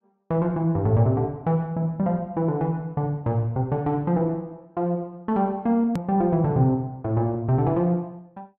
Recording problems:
low-pass filter; nothing above 7.2 kHz
edit click; at 6 s

